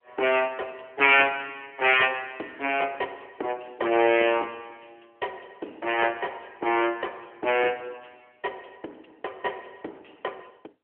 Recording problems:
telephone audio; 260 Hz to 3.2 kHz, AMR-NB

